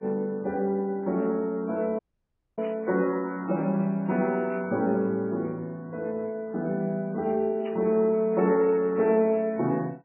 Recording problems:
codec artefacts; MP3, log-spectral distance 2 dB
dropout; at 2 s for 0.5 s
static burst; at 2.5 s, at 4.5 s and at 7.5 s; peak -14 dB vs average level

